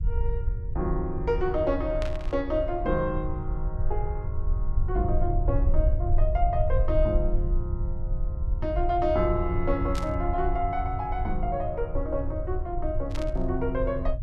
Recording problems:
low-frequency rumble; below 66 Hz, SNR 1 dB
burst of static; at 2 s, at 10 s and at 13 s; peak -5 dB vs average level

